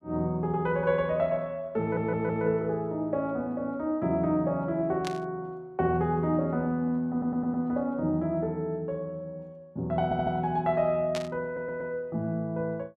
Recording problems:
stutter; 4 times, first at 2 s
burst of static; at 5 s and at 11 s; peak -4 dB vs average level

